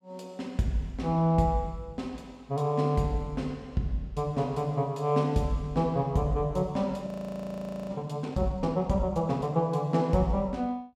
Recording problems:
audio freezing; at 7 s for 1 s

